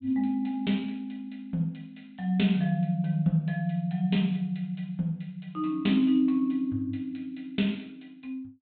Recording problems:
low-pass filter; nothing above 4 kHz

